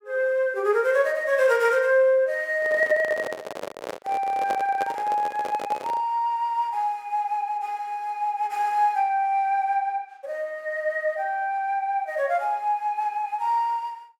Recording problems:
handling noise; from 2.5 to 6 s; peak -3 dB vs average level

